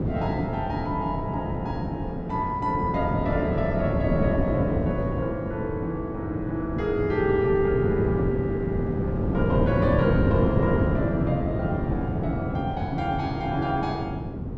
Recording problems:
wind noise; below 320 Hz, SNR 0 dB

